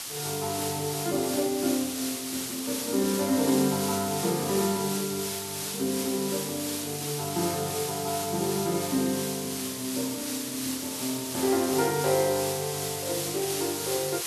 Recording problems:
background hiss; slope +1 dB per octave, SNR 3 dB

